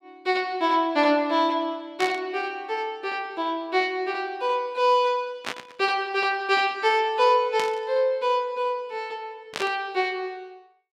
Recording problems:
static burst; 4 times, first at 2 s; peak -1 dB vs average level

